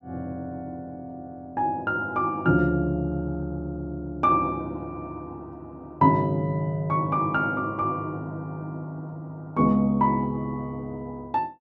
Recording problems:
none

